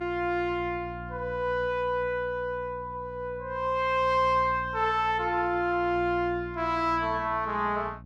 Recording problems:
hum; 60 Hz, harmonics up to 540 Hz, SNR 16 dB

